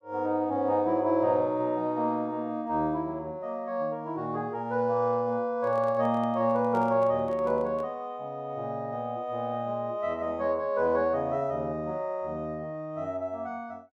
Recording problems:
handling noise; from 5.5 to 8 s; peak -9 dB vs average level

